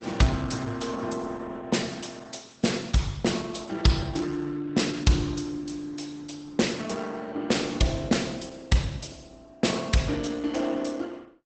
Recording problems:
lossy codec; Opus, log-spectral distance 5 dB, nothing above 8 kHz

